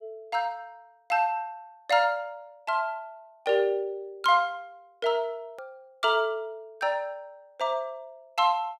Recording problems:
hard cut with a click; at 5.5 s

